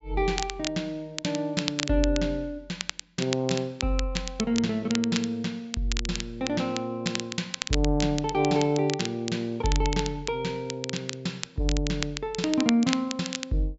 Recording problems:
treble cut off; nothing above 8 kHz
crackle; vinyl, SNR 7 dB

